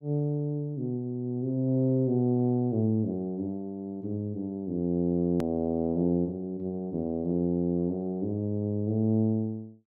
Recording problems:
click at an edit; at 5.5 s

